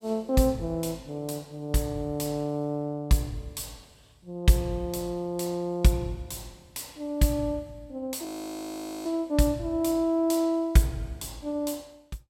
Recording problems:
frozen audio; at 8.5 s for 1 s

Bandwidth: 16 kHz